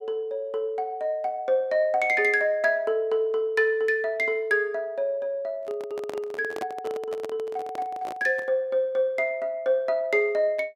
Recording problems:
microphone handling noise; from 5.5 to 8.5 s; peak -6 dB vs average level

